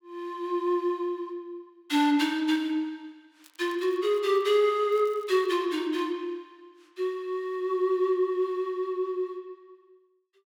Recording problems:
crackling; from 3.5 to 4.5 s and at 5 s; loose cable, SNR 30 dB

